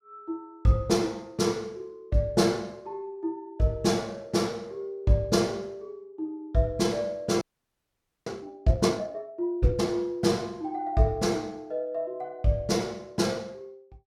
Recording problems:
frozen audio; at 7.5 s for 1 s

